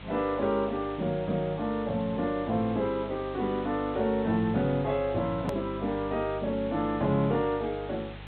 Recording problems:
low-pass filter; nothing above 4 kHz
electrical hum; 50 Hz, harmonics up to 500 Hz, SNR 15 dB
hiss; SNR 18 dB
edit click; at 5.5 s

